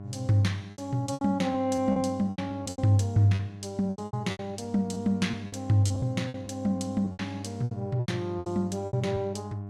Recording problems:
electrical hum; 50 Hz, harmonics up to 800 Hz, SNR 12 dB
lost packets; 14% of the sound replaced, filled with repeated pitch periods

